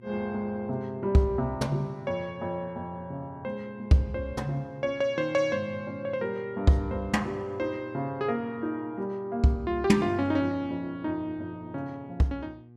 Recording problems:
hum; 60 Hz, harmonics up to 840 Hz, SNR 21 dB

